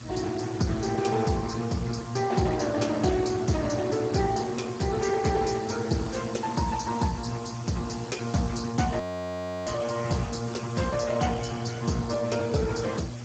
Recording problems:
codec artefacts; Speex, log-spectral distance 8 dB, nothing above 7.3 kHz
hum; 60 Hz, harmonics up to 720 Hz, SNR 13 dB
background hiss; slope -2 dB per octave, SNR 17 dB
frozen audio; at 9 s for 0.5 s

